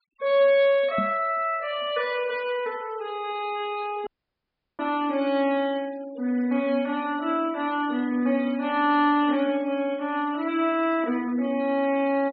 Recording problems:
treble cut off; nothing above 5.5 kHz
denoising artefacts; signal-to-artefact ratio 22 dB
microphone thump; at 1 s; peak -2 dB vs average level
dropout; at 4 s for 0.5 s

